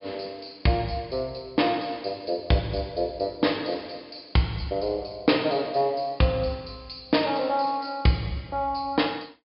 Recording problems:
treble missing; nothing above 5.5 kHz

